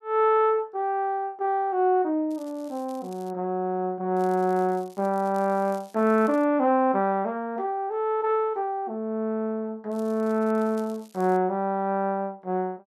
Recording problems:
crackling; from 2.5 to 3.5 s, from 4 to 6.5 s and from 10 to 11 s; loose cable, SNR 28 dB

